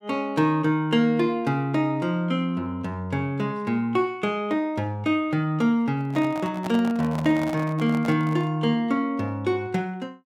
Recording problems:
handling noise; from 6 to 8.5 s; peak -5 dB vs average level

